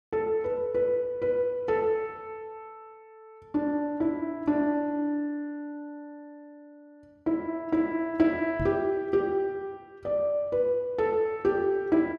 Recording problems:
microphone bump; at 8.5 s; peak -1 dB vs average level

